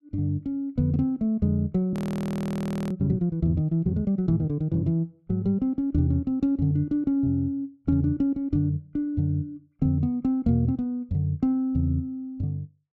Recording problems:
audio freezing; at 2 s for 1 s

